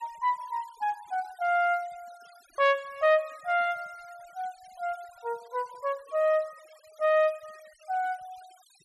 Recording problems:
denoising artefacts; signal-to-artefact ratio 26 dB

